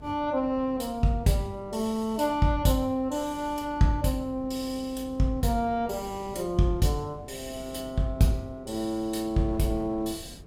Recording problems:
hum; 50 Hz, harmonics up to 450 Hz, SNR 22 dB
wind noise; below 320 Hz, SNR 20 dB

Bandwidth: 16 kHz